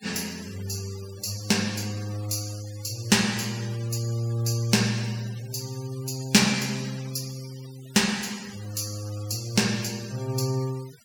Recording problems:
denoising artefacts; signal-to-artefact ratio 17 dB

